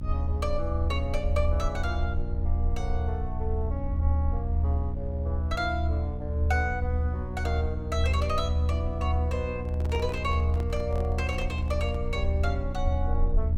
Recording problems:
hum; 60 Hz, harmonics up to 600 Hz, SNR 4 dB
rumble; below 78 Hz, strongest tone 76 Hz, SNR -4 dB
microphone handling noise; from 9.5 to 12 s; peak -3 dB vs average level

